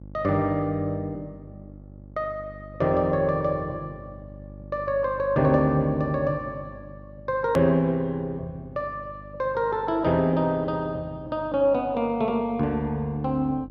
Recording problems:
hum; 50 Hz, harmonics up to 600 Hz, SNR 19 dB
click at an edit; at 7.5 s

